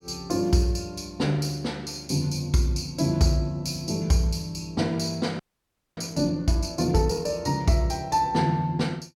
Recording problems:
frozen audio; at 5.5 s for 0.5 s

